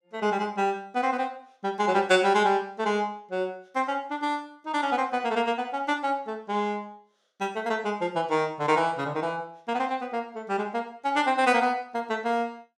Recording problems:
none

